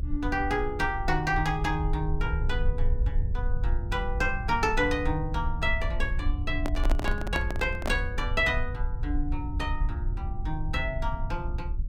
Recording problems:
rumble; below 64 Hz, SNR 2 dB
microphone handling noise; from 6.5 to 8 s; peak +1 dB vs average level

